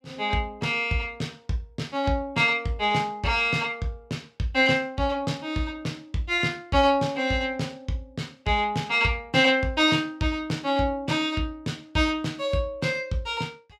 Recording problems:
none

